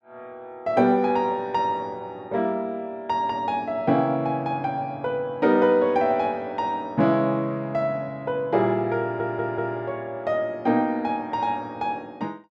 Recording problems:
stutter; at 9 s

